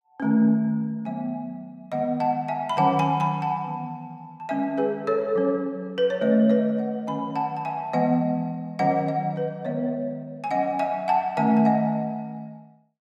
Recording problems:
none

